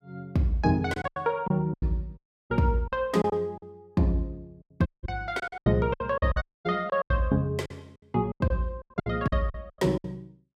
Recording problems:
lost packets; 14% of the sound replaced, filled with silence
dropout; at 2 s, at 5 s and at 6.5 s

